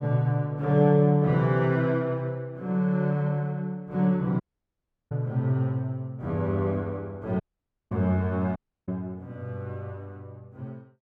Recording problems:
audio cutting out; at 4.5 s for 0.5 s, at 7.5 s for 0.5 s and at 8.5 s

